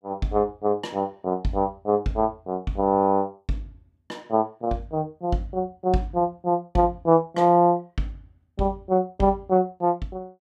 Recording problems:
none

